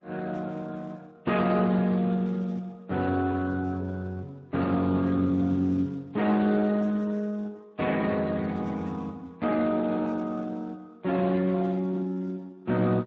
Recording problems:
lossy compression; Vorbis, then Speex, log-spectral distance 2 dB

